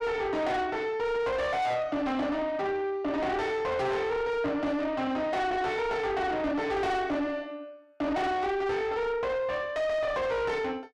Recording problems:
distortion; soft clipping, signal-to-distortion ratio 6 dB

